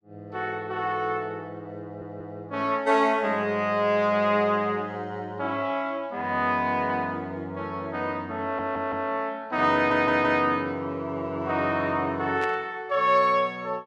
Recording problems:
audio stuttering; at 2 s, at 8.5 s and at 9.5 s
static burst; at 12 s; peak -8 dB vs average level

